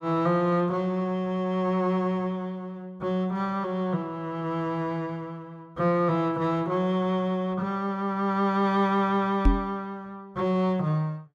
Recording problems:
knock on the microphone; at 9.5 s; peak +8 dB vs average level

